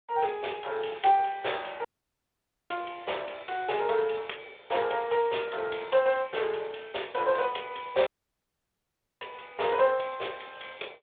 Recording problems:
phone line; 370 Hz to 3.6 kHz, Speex
dropout; at 2 s for 1 s and at 8 s for 1 s

